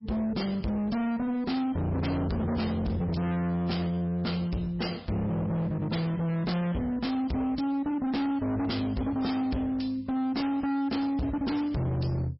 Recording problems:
codec artefacts; MP3, log-spectral distance 2 dB, nothing above 5.3 kHz
distorted audio; hard clipping, uneven, signal-to-distortion ratio 6 dB

